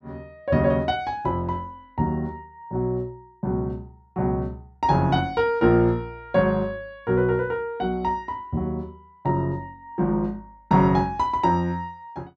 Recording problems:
none

